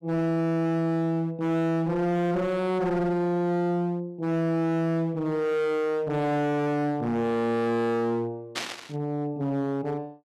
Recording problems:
distorted audio; hard clipping, uneven, signal-to-distortion ratio 7 dB
burst of static; at 8.5 s; peak 0 dB vs average level

